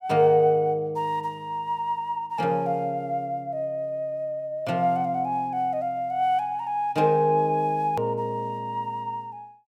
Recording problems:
edit click; at 8 s

